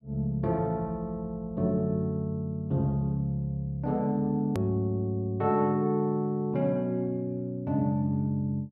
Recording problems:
hard cut with a click; at 4.5 s

